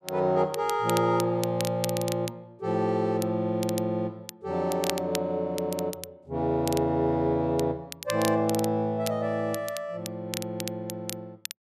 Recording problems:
crackle; vinyl, SNR 11 dB

